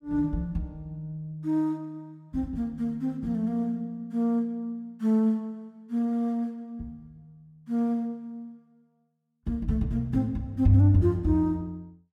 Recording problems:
none

